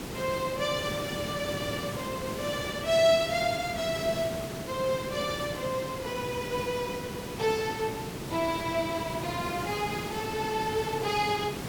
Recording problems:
background hiss; slope -5 dB per octave, SNR 6 dB

